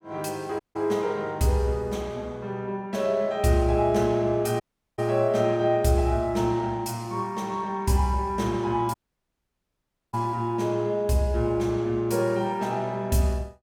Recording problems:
dropout; at 0.5 s, at 4.5 s and at 9 s for 1 s

